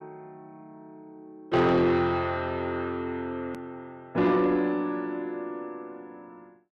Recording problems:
distorted audio; soft clipping, signal-to-distortion ratio 11 dB
edit click; at 3.5 s

